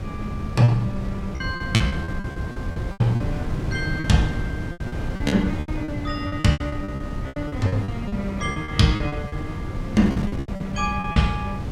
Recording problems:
wind on the microphone; below 210 Hz, SNR 6 dB
packet loss; 16% of the sound replaced, filled with repeated pitch periods

